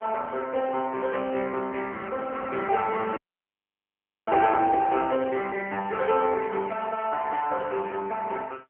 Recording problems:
telephone audio; 280 Hz to 3.1 kHz, AMR-NB
audio cutting out; at 3 s for 1 s

